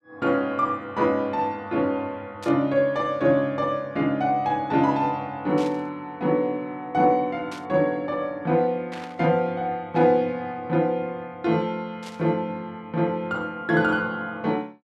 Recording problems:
burst of static; 5 times, first at 2.5 s; peak -11 dB vs average level

